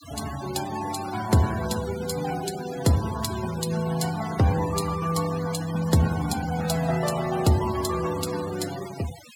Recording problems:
noise reduction artefacts; signal-to-artefact ratio 13 dB

